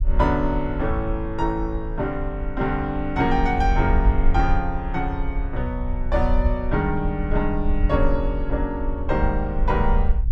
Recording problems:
rumble; below 58 Hz, SNR 2 dB

